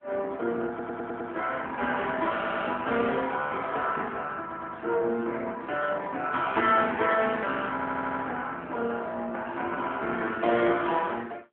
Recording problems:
phone line; 260 Hz to 3.6 kHz, AMR-NB
audio stuttering; 4 times, first at 0.5 s

